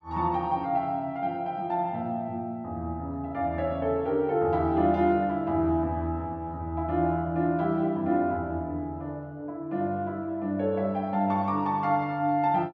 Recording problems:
none

